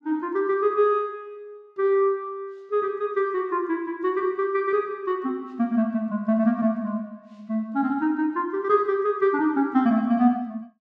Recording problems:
none

